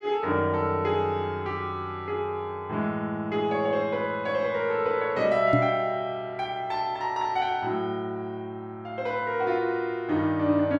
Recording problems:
microphone bump; at 5.5 s; peak +7 dB vs average level

